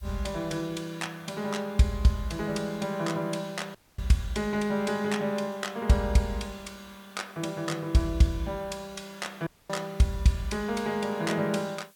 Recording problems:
background hiss; slope +1 dB per octave, SNR 28 dB
dropout; at 4 s and at 9.5 s

